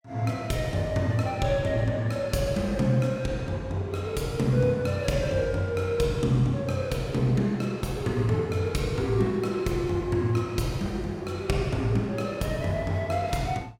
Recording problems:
none

